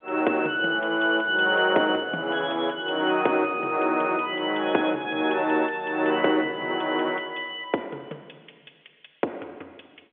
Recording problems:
telephone audio; 260 Hz to 3.4 kHz, G.711

